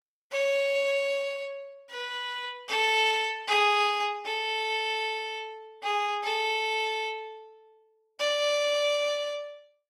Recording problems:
codec artefacts; Opus, log-spectral distance 2 dB

